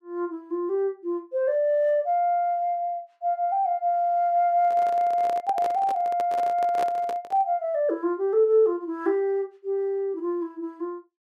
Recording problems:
microphone handling noise; from 4.5 to 7.5 s; peak -4 dB vs average level

